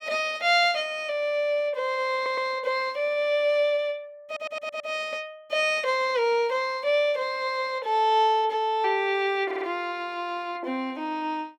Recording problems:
audio stuttering; at 2 s, at 4.5 s and at 9.5 s

